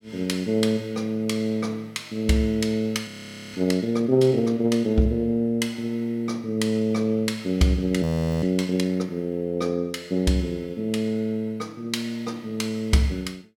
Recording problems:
audio freezing; at 3 s and at 8 s

